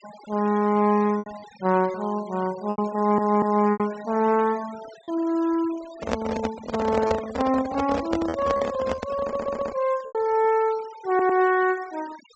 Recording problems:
low-pass filter; nothing above 8 kHz
denoising artefacts; signal-to-artefact ratio 19 dB
packet loss; 5% of the sound replaced, filled with repeated pitch periods
audio stuttering; at 3 s, at 9 s and at 11 s
handling noise; from 6 to 10 s; peak +2 dB vs average level

